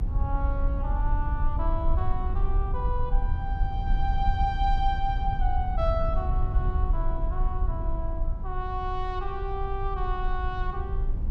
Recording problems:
rumble; below 62 Hz, SNR -3 dB

